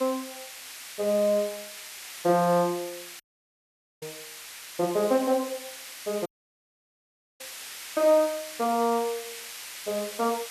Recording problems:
hiss; SNR 12 dB
audio cutting out; at 3 s for 1 s and at 6.5 s for 1 s

